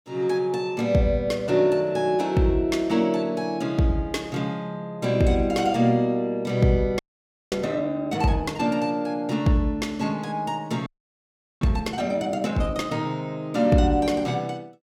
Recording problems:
audio freezing; at 7 s for 0.5 s and at 11 s for 1 s

